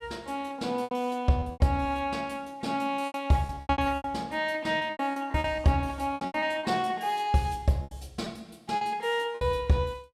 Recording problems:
packet loss; 13% of the sound replaced, filled with repeated pitch periods

